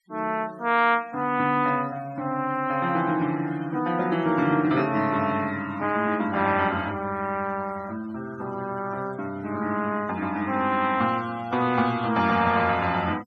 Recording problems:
noise reduction artefacts; signal-to-artefact ratio 21 dB

